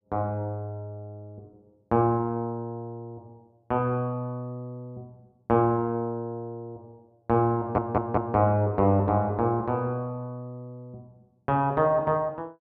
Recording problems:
stutter; at 7.5 s

